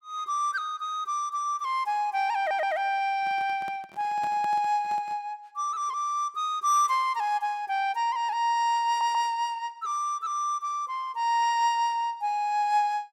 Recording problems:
audio stuttering; at 2.5 s and at 9 s
microphone handling noise; from 3 to 5 s; peak -12 dB vs average level

